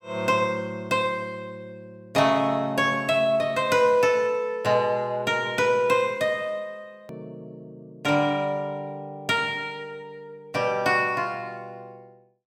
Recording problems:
edit click; at 7 s

